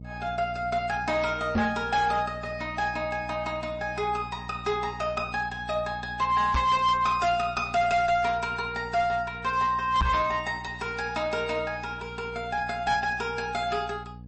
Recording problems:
lossy compression; MP3, log-spectral distance 2 dB, nothing above 8.2 kHz
distortion; hard clipping, uneven, signal-to-distortion ratio 10 dB
hum; 60 Hz, harmonics up to 540 Hz, SNR 16 dB
microphone thump; at 1.5 s, at 6.5 s and at 10 s; peak +5 dB vs average level

